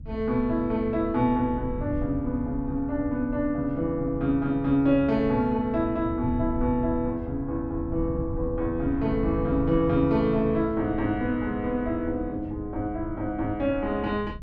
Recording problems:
wind on the microphone; below 110 Hz, SNR 11 dB

